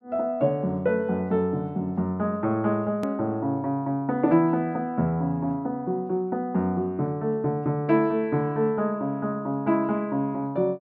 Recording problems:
hard cut with a click; at 3 s

